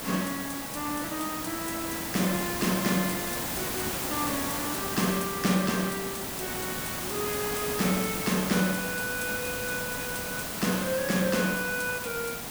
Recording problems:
hiss; slope -3 dB per octave, SNR 1 dB

